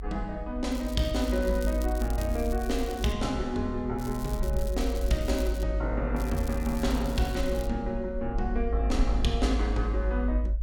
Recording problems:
low-frequency rumble; below 54 Hz, strongest tone 52 Hz, SNR 2 dB
crackle; from 0.5 to 3 s, from 4 to 5.5 s and from 6 to 7.5 s; loose cable, SNR 16 dB

